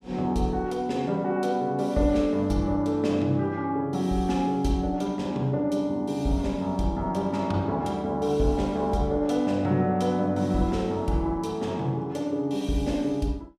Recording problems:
none

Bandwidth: 15 kHz